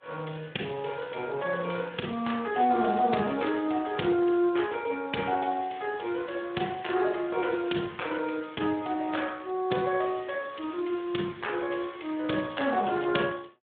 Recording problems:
telephone audio; 150 Hz to 3.6 kHz, Speex

